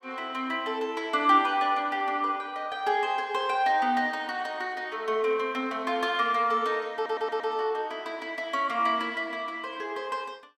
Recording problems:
stutter; at 7 s

